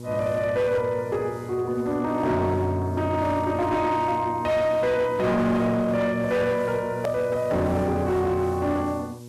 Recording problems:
distortion; hard clipping, signal-to-distortion ratio 12 dB
hum; 60 Hz, harmonics up to 960 Hz, SNR 15 dB
background hiss; SNR 29 dB
edit click; at 7 s

